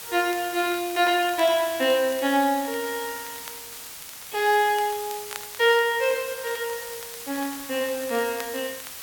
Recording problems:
hiss; slope +1 dB per octave, SNR 11 dB
crackling; vinyl, SNR 21 dB

